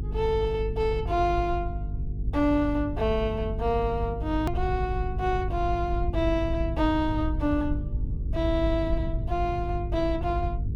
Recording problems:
hum; 50 Hz, harmonics up to 450 Hz, SNR 6 dB
low-frequency rumble; below 82 Hz, SNR 7 dB
click at an edit; at 4.5 s

